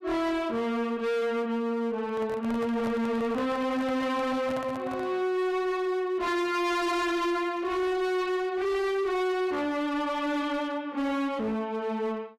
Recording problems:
distortion; hard clipping, signal-to-distortion ratio 7 dB
microphone handling noise; from 2 to 5 s; peak -5 dB vs average level

